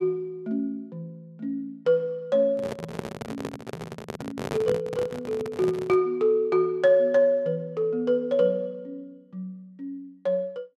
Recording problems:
handling noise; from 2.5 to 6 s; peak -3 dB vs average level

